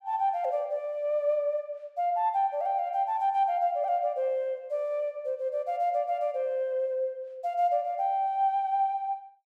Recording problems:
none

